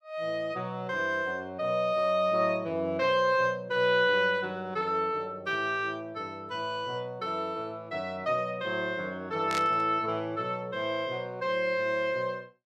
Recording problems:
burst of static; at 9.5 s; peak -2 dB vs average level

